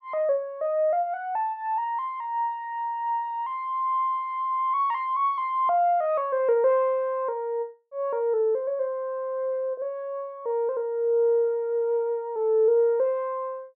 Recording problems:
none

